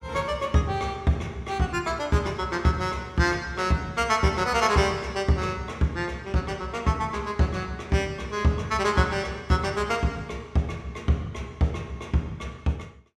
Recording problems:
none

